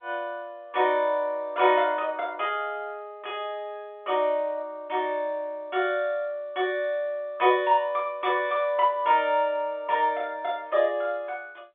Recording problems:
phone line; 320 Hz to 3.5 kHz, G.711

